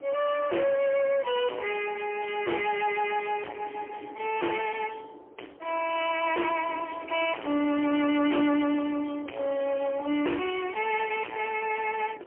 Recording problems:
phone line; 240 Hz to 3.1 kHz, AMR-NB, then MP3
distorted audio; soft clipping, signal-to-distortion ratio 5 dB
wind noise; below 1.1 kHz, SNR 18 dB

